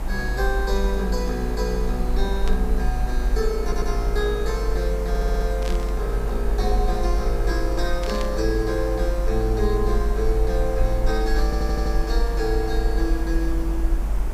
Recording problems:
background hiss; slope -7 dB per octave, SNR 9 dB
low-frequency rumble; below 50 Hz, strongest tone 48 Hz, SNR -1 dB
static burst; at 2.5 s, at 5.5 s and at 8 s; peak -3 dB vs average level
stutter; at 3.5 s, at 5 s and at 11 s

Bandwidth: 15.5 kHz